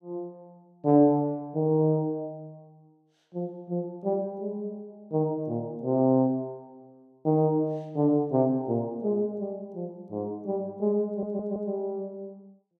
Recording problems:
audio stuttering; at 11 s

